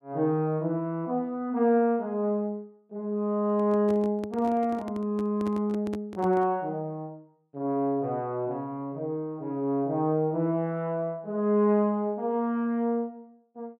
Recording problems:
microphone handling noise; from 3.5 to 6.5 s; peak -7 dB vs average level

